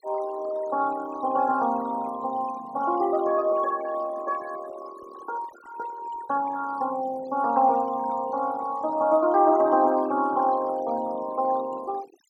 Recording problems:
denoising artefacts; signal-to-artefact ratio 17 dB

